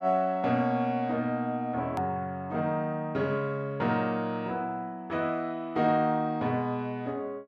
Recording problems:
edit click; at 2 s

